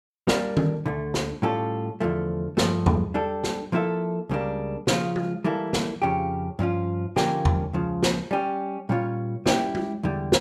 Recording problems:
none

